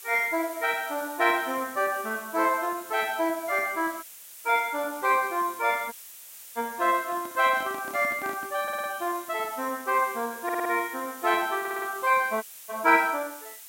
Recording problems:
hiss; slope +3 dB per octave, SNR 15 dB
audio cutting out; at 4 s, at 6 s for 0.5 s and at 12 s
microphone handling noise; from 7 to 8.5 s; peak -10 dB vs average level
stutter; at 8.5 s, at 10 s and at 12 s

